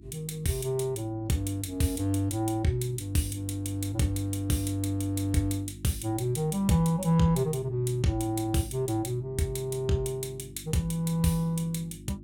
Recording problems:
electrical hum; 50 Hz, harmonics up to 350 Hz, SNR 18 dB

